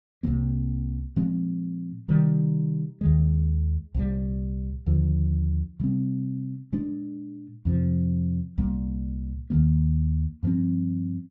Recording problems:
none

